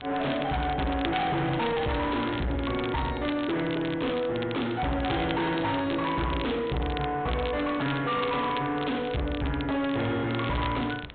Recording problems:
treble missing; nothing above 4 kHz
distorted audio; soft clipping, signal-to-distortion ratio 6 dB
wind on the microphone; below 1.2 kHz, SNR 19 dB
crackle; vinyl, SNR 13 dB

